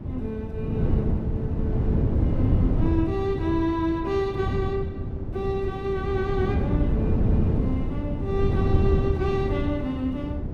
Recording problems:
wind on the microphone; below 200 Hz, SNR -3 dB

